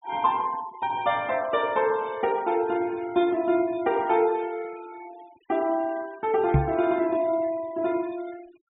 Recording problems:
treble cut off; nothing above 3.8 kHz
noise reduction artefacts; signal-to-artefact ratio 23 dB
microphone bump; at 6.5 s; peak +8 dB vs average level

